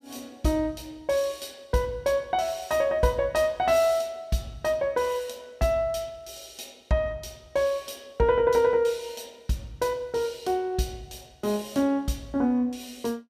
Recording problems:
none

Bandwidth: 15 kHz